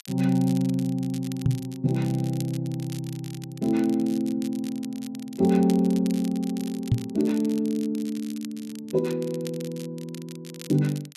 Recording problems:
crackling; vinyl, SNR 18 dB
knock on the microphone; at 1.5 s and at 7 s; peak +8 dB vs average level

